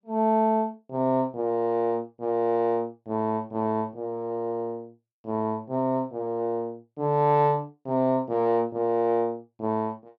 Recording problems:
none

